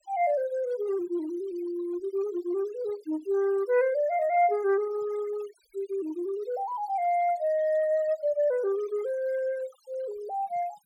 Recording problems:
denoising artefacts; signal-to-artefact ratio 21 dB

